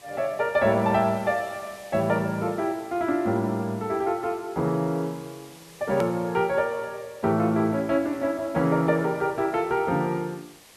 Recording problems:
hiss; SNR 24 dB
edit click; at 6 s

